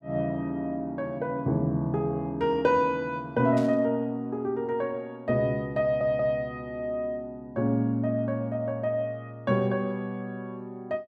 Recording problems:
static burst; at 3.5 s; peak -12 dB vs average level
stutter; at 6 s

